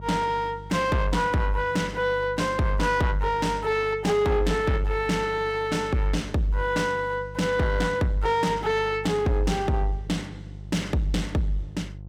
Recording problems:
distorted audio; soft clipping, signal-to-distortion ratio 12 dB
electrical hum; 50 Hz, harmonics up to 500 Hz, SNR 16 dB

